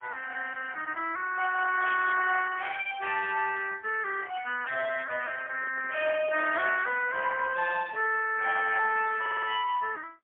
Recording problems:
telephone audio; 280 Hz to 2.6 kHz, AMR-NB, then MP3
microphone handling noise; from 5.5 to 8 s; peak -13 dB vs average level
stutter; at 9 s

